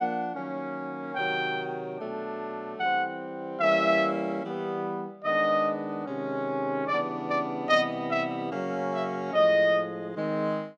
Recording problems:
none

